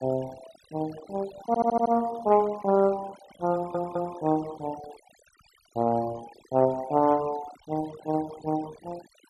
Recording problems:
noise reduction artefacts; signal-to-artefact ratio 19 dB
audio stuttering; at 1.5 s and at 3.5 s

